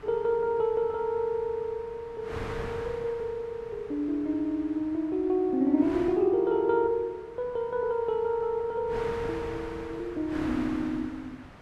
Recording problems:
wind noise; below 1.5 kHz, SNR 15 dB

